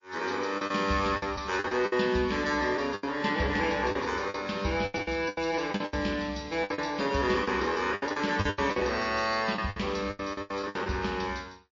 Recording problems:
lossy compression; MP3, log-spectral distance 5 dB, nothing above 6.5 kHz
packet loss; 13% of the sound replaced, filled with the last packet

